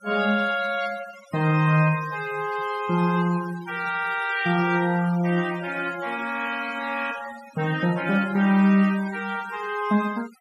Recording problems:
noise reduction artefacts; signal-to-artefact ratio 16 dB

